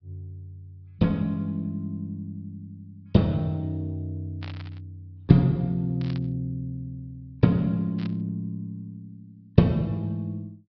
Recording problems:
low-pass filter; nothing above 5.5 kHz
static burst; at 4.5 s, at 6 s and at 8 s; peak -11 dB vs average level

